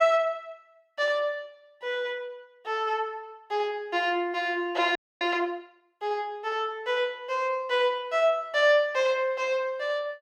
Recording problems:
audio freezing; at 5 s

